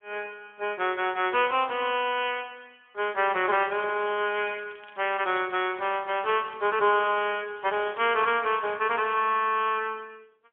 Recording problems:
phone line; 260 Hz to 3.4 kHz, AMR-NB, then MP3
crackle; from 3.5 to 8.5 s; loose cable, SNR 27 dB

